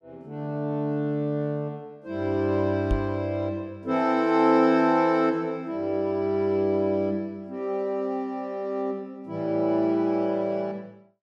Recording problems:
microphone bump; at 3 s; peak +2 dB vs average level

